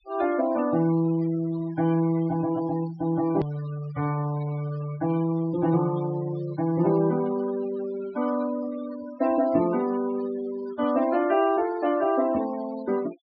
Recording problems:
treble cut off; nothing above 5.5 kHz
noise reduction artefacts; signal-to-artefact ratio 17 dB
hard cut with a click; at 3.5 s

